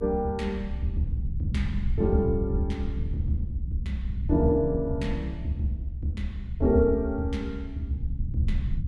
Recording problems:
low-frequency rumble; below 88 Hz, SNR 4 dB

